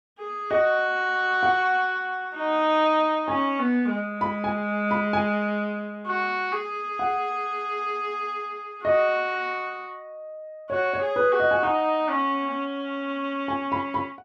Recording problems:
none

